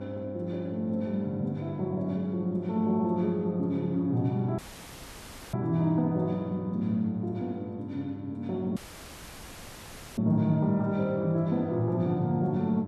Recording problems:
electrical hum; 50 Hz, harmonics up to 1.1 kHz, SNR 12 dB
audio cutting out; at 4.5 s for 1 s and at 9 s for 1.5 s

